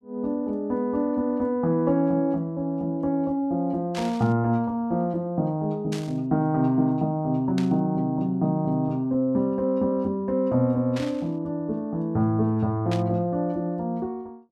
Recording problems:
burst of static; 5 times, first at 4 s; peak -7 dB vs average level

